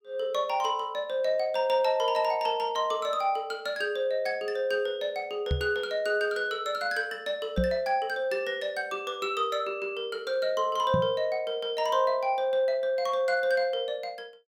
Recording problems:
knock on the microphone; at 5.5 s, at 7.5 s and at 11 s; peak +4 dB vs average level

